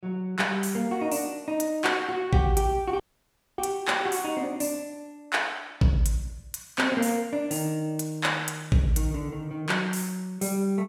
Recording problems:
audio cutting out; at 3 s for 0.5 s

